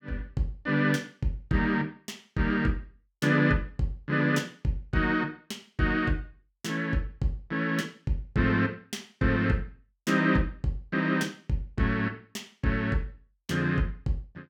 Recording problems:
none

